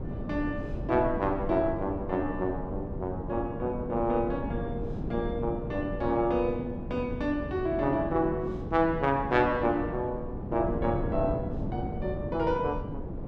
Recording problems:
wind on the microphone; below 280 Hz, SNR 6 dB

